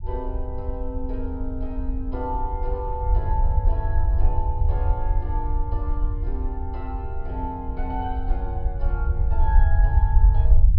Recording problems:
treble cut off; nothing above 5.5 kHz
low-frequency rumble; below 66 Hz, SNR -8 dB

